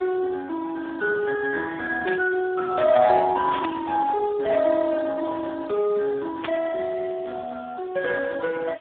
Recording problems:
phone line; 280 Hz to 2.2 kHz, Speex
background hiss; SNR 26 dB
static burst; at 2 s, at 3.5 s and at 6.5 s; peak -4 dB vs average level

